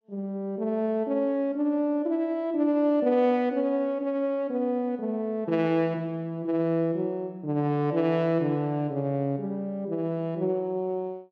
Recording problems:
none

